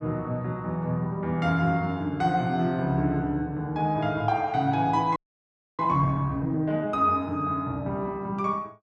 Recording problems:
audio freezing; at 5 s for 0.5 s

